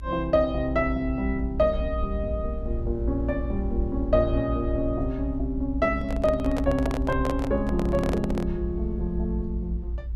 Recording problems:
low-frequency rumble; below 60 Hz, strongest tone 58 Hz, SNR 5 dB
microphone handling noise; from 6 to 8.5 s; peak -1 dB vs average level

